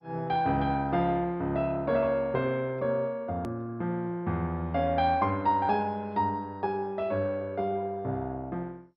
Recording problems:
codec artefacts; MP2, log-spectral distance 2 dB
edit click; at 3.5 s

